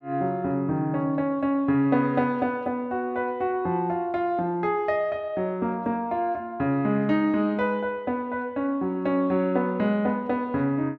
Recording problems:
none

